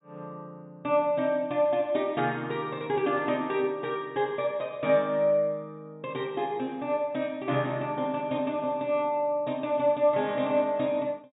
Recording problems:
treble cut off; nothing above 4 kHz

